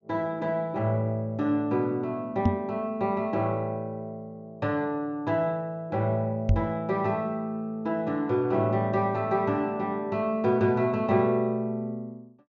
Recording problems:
treble missing; nothing above 8 kHz
knock on the microphone; at 2.5 s and at 6.5 s; peak +7 dB vs average level

